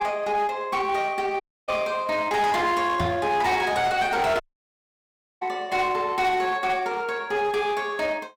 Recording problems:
distortion; hard clipping, uneven, signal-to-distortion ratio 11 dB
dropout; at 1.5 s and at 4.5 s for 1 s
microphone thump; at 3 s; peak 0 dB vs average level

